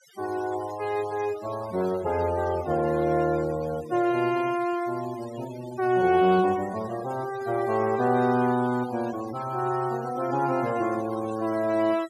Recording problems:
noise reduction artefacts; signal-to-artefact ratio 17 dB

